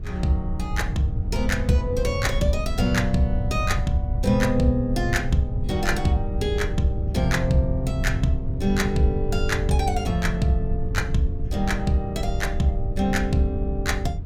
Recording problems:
wind on the microphone; below 96 Hz, SNR 3 dB

